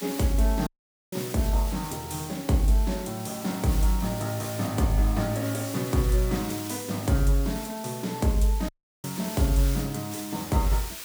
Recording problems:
hiss; SNR 11 dB
audio cutting out; at 0.5 s and at 8.5 s

